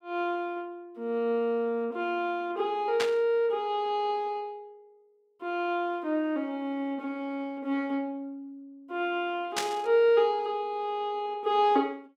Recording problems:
static burst; at 3 s and at 9.5 s; peak +3 dB vs average level

